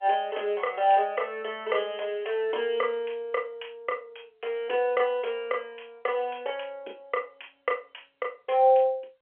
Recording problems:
phone line; 340 Hz to 3.3 kHz, G.711

